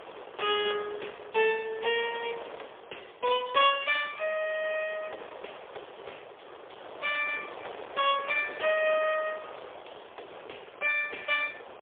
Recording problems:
telephone audio; 370 Hz to 3.4 kHz, AMR-NB, then MP3
wind on the microphone; below 1.2 kHz, SNR 16 dB

